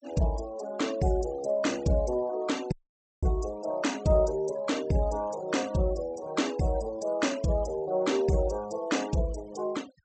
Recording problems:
low-pass filter; nothing above 8 kHz
denoising artefacts; signal-to-artefact ratio 19 dB
dropout; at 2.5 s for 0.5 s

